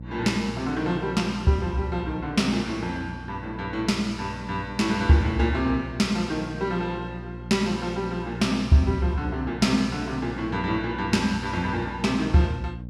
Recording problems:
electrical hum; 60 Hz, harmonics up to 540 Hz, SNR 13 dB

